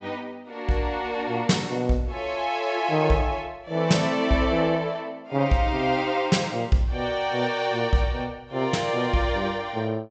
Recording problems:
treble missing; nothing above 8 kHz

